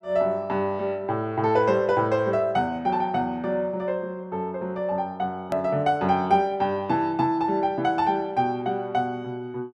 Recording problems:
edit click; at 5.5 s

